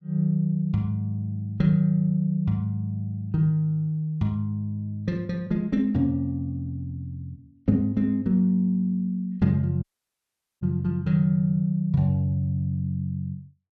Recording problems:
dropout; at 10 s for 1 s

